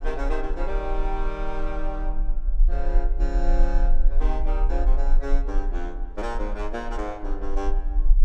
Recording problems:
low-frequency rumble; below 36 Hz, strongest tone 18 Hz, SNR -5 dB

